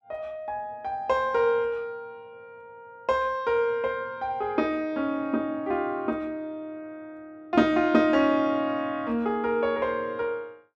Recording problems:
none

